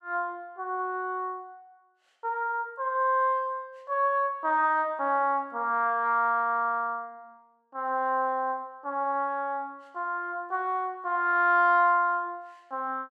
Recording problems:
none

